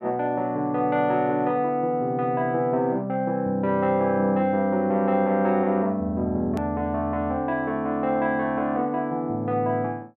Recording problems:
click at an edit; at 6.5 s

